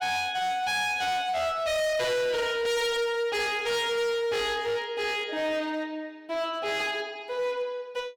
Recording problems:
distorted audio; hard clipping, signal-to-distortion ratio 7 dB

